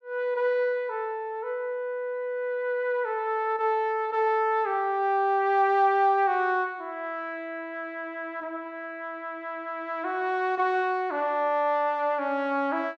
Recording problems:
none

